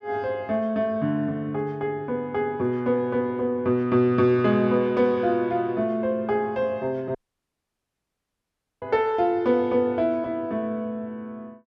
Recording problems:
dropout; at 7 s for 1.5 s

